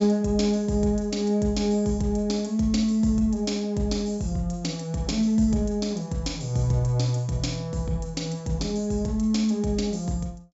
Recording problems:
low-pass filter; nothing above 8 kHz

